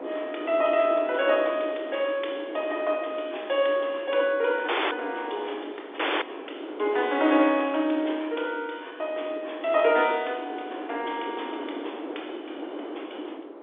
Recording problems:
phone line; 280 Hz to 3.6 kHz, G.711
wind noise; below 610 Hz, SNR 11 dB
audio cutting out; at 4.5 s and at 6 s

